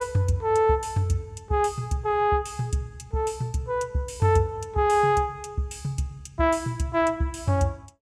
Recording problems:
none

